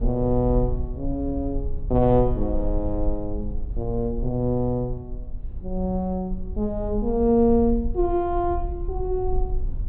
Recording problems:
treble cut off; nothing above 4.2 kHz
rumble; below 56 Hz, SNR 7 dB

